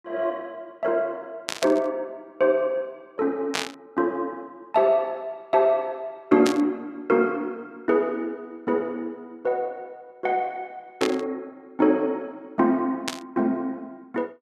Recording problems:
burst of static; 5 times, first at 1.5 s; peak +3 dB vs average level

